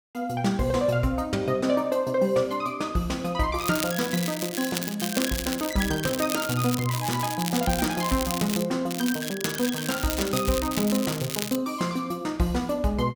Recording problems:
crackling; from 3.5 to 8.5 s and from 9 to 12 s; loose cable, SNR 6 dB

